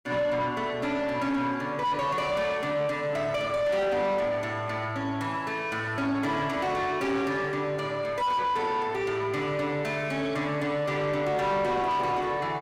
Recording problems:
distorted audio; soft clipping, signal-to-distortion ratio 8 dB

